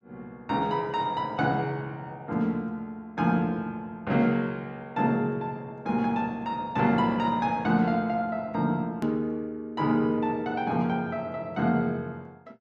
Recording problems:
hard cut with a click; at 9 s

